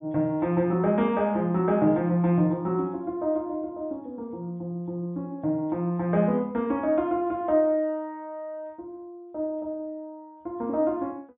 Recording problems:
treble missing; nothing above 3.7 kHz

